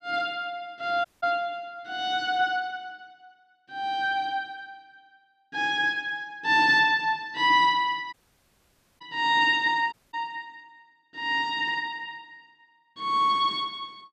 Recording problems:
audio cutting out; at 1 s, at 8 s for 1 s and at 10 s

